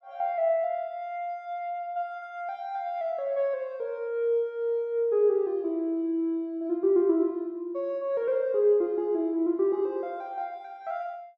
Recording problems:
none

